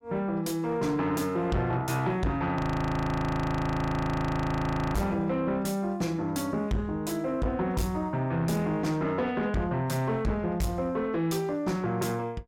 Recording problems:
distortion; soft clipping, signal-to-distortion ratio 7 dB
frozen audio; at 2.5 s for 2.5 s

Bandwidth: 17 kHz